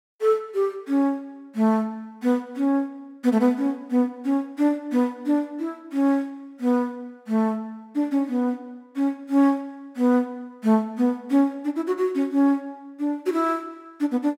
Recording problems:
none

